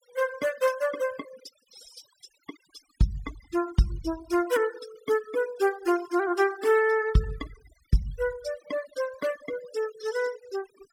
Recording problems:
denoising artefacts; signal-to-artefact ratio 17 dB

